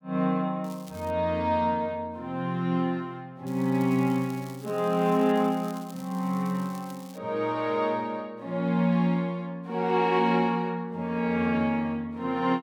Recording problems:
crackle; at 0.5 s and from 3.5 to 7 s; loose cable, SNR 23 dB

